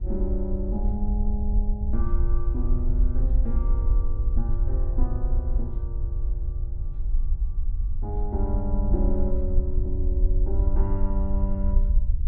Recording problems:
low-frequency rumble; below 54 Hz, SNR -7 dB
wind on the microphone; below 78 Hz, SNR 11 dB

